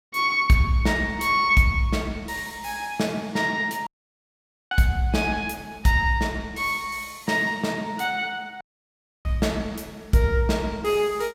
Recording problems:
audio cutting out; at 4 s for 1 s and at 8.5 s for 0.5 s

